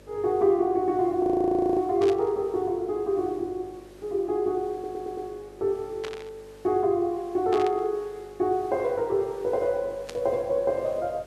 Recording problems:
electrical hum; 50 Hz, harmonics up to 600 Hz, SNR 26 dB
background hiss; slope -3 dB per octave, SNR 29 dB
frozen audio; at 1 s for 0.5 s
static burst; 4 times, first at 2 s; peak -7 dB vs average level
stutter; at 4.5 s

